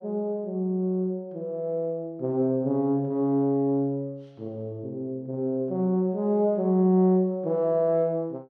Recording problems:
none

